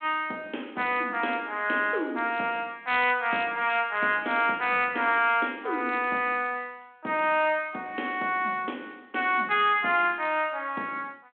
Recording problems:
phone line; 190 Hz to 3.5 kHz, G.726

